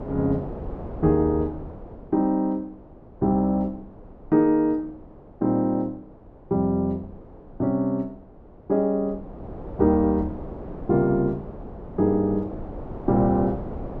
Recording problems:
wind noise; below 500 Hz, SNR 15 dB

